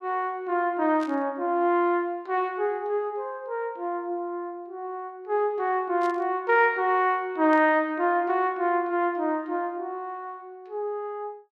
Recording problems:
burst of static; at 1 s, at 6 s and at 7.5 s; peak -14 dB vs average level

